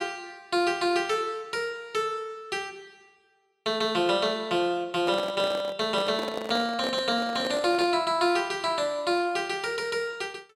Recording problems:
microphone handling noise; from 5 to 8 s; peak -3 dB vs average level

